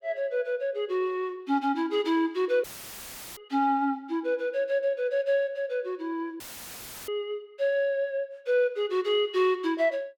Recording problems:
dropout; at 2.5 s for 0.5 s and at 6.5 s for 0.5 s; filled with static

